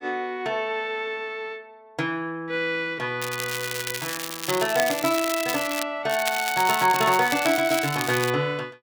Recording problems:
crackling; from 3 to 6 s and from 6 to 8.5 s; loose cable, SNR 6 dB

